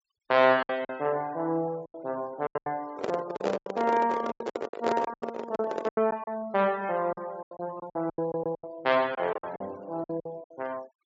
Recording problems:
treble cut off; nothing above 8 kHz
noise reduction artefacts; signal-to-artefact ratio 23 dB
lost packets; 15% of the sound replaced, filled with silence
microphone handling noise; from 3 to 6 s; peak +5 dB vs average level
stutter; at 8 s

